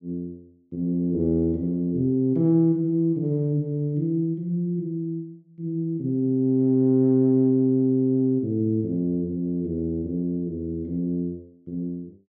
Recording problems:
none

